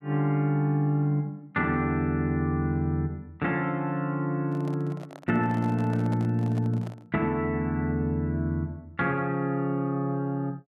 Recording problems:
microphone handling noise; from 4.5 to 7 s; peak -10 dB vs average level

